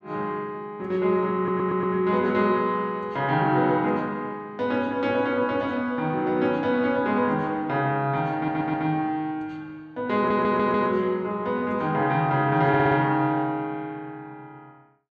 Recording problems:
audio stuttering; 4 times, first at 1.5 s

